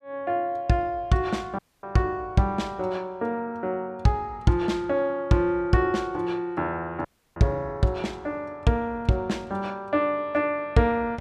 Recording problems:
dropout; at 1.5 s and at 7 s

